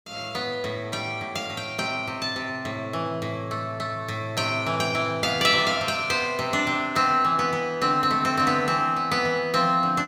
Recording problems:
none

